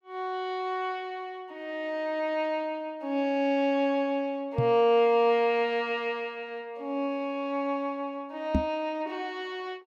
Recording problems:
knock on the microphone; at 4.5 s and at 8.5 s; peak +6 dB vs average level

